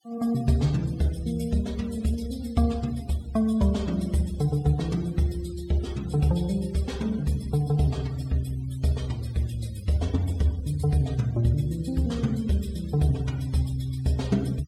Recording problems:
noise reduction artefacts; signal-to-artefact ratio 22 dB

